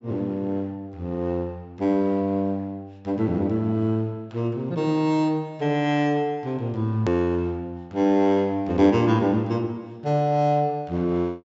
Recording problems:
treble missing; nothing above 7.5 kHz
hard cut with a click; at 7 s

